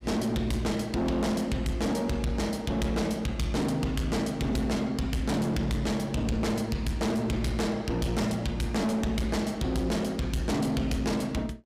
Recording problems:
distortion; hard clipping, signal-to-distortion ratio 8 dB

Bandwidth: 15.5 kHz